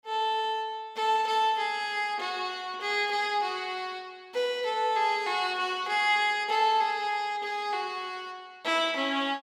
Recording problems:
none

